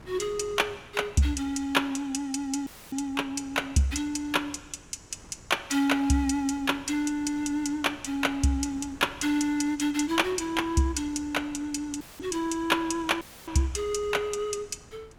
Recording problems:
wind on the microphone; below 780 Hz, SNR 22 dB
dropout; at 2.5 s, at 12 s and at 13 s; filled with static

